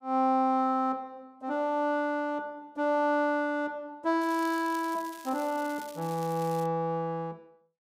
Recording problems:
crackle; from 4 to 6.5 s; loose cable, SNR 19 dB

